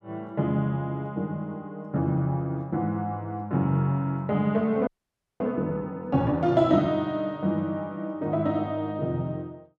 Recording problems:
frozen audio; at 5 s for 0.5 s

